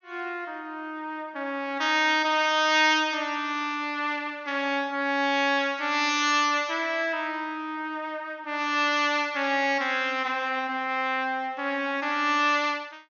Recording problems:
treble cut off; nothing above 6.7 kHz

